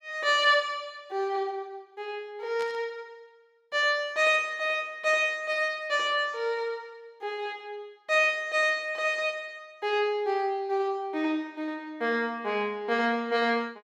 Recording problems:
burst of static; at 2.5 s; peak -11 dB vs average level

